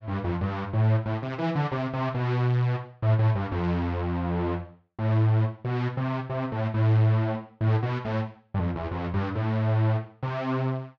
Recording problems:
none

